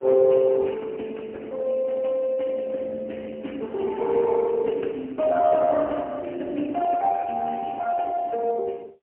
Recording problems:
phone line; 240 Hz to 3.2 kHz, AMR-NB, then MP3

